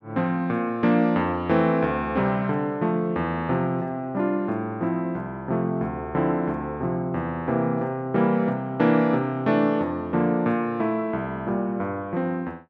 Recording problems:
none

